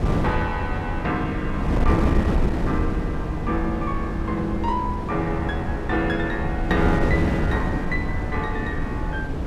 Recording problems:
wind noise; below 280 Hz, SNR -1 dB

